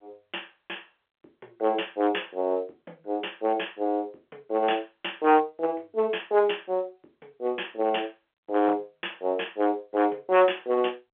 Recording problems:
phone line; 340 Hz to 3.4 kHz, G.711
distortion; hard clipping, signal-to-distortion ratio 13 dB

